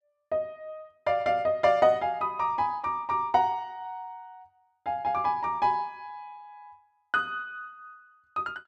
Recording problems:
none

